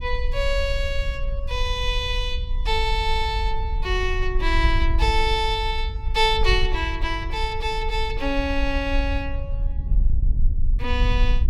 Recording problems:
wind on the microphone; below 54 Hz, SNR 2 dB

